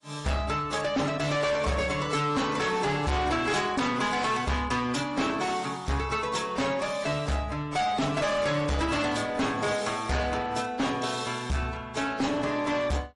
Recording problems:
codec artefacts; MP3, then AAC, log-spectral distance 4 dB, nothing above 10.4 kHz
distorted audio; hard clipping, uneven, signal-to-distortion ratio 6 dB

